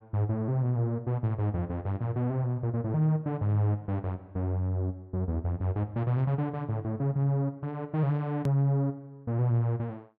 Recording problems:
hard cut with a click; at 8.5 s

